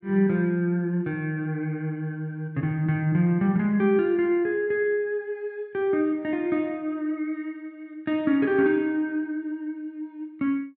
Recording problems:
none

